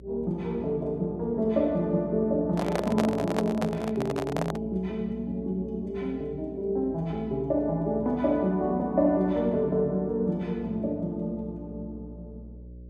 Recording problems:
hum; 60 Hz, harmonics up to 600 Hz, SNR 19 dB
handling noise; from 2.5 to 4.5 s; peak +3 dB vs average level

